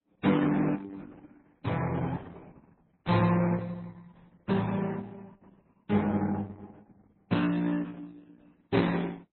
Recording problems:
lossy codec; Opus, then MP3, log-spectral distance 4 dB, nothing above 4.1 kHz

